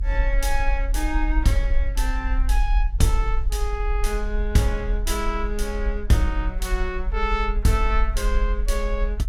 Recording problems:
rumble; below 50 Hz, strongest tone 38 Hz, SNR 0 dB

